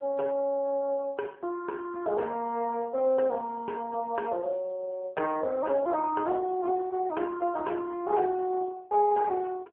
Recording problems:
phone line; 190 Hz to 3 kHz, AMR-NB

